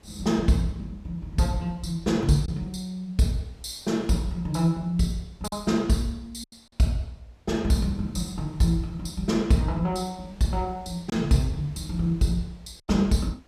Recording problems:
wind on the microphone; below 1.4 kHz, SNR 29 dB
lost packets; 1.3% of the sound replaced, filled with silence

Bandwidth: 15 kHz